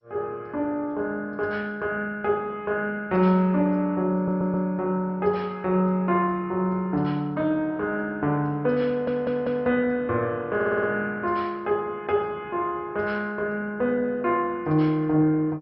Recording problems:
codec artefacts; MP2, log-spectral distance 2 dB, nothing above 5.5 kHz
stutter; at 4 s, at 9 s and at 11 s

